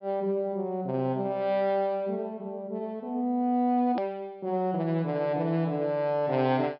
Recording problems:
treble cut off; nothing above 5.4 kHz
hard cut with a click; at 4 s

